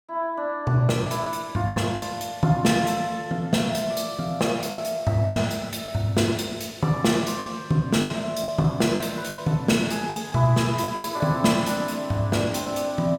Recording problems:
packet loss; 7% of the sound replaced, filled with the last packet

